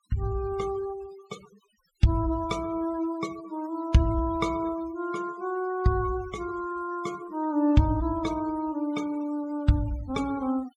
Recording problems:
noise reduction artefacts; signal-to-artefact ratio 20 dB

